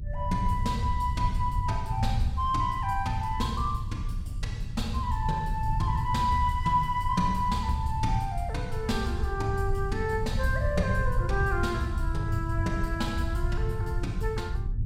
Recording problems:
low-frequency rumble; below 110 Hz, SNR 2 dB

